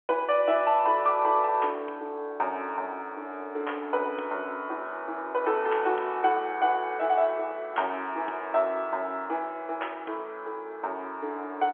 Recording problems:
phone line; 280 Hz to 3.4 kHz, G.711

